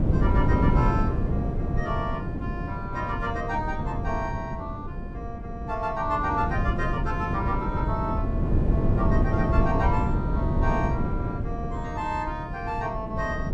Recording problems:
hum; 50 Hz, harmonics up to 400 Hz, SNR 18 dB
wind on the microphone; below 210 Hz, SNR -3 dB

